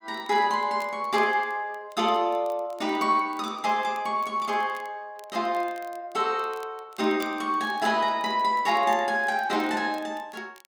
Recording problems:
crackling; vinyl, SNR 28 dB

